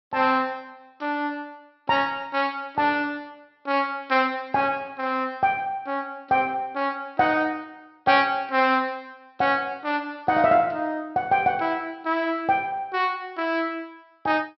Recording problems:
treble cut off; nothing above 5.7 kHz

